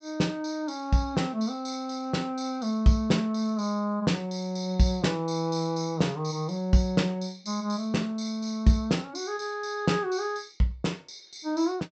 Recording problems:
treble cut off; nothing above 8 kHz

